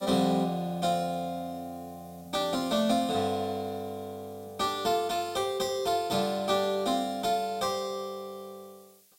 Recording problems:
background hiss; slope +3 dB per octave, SNR 27 dB

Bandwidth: 16 kHz